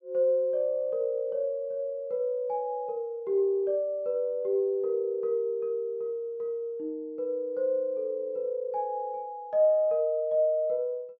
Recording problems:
none

